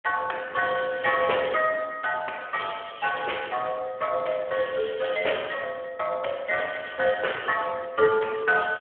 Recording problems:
phone line; 340 Hz to 3.2 kHz, Speex

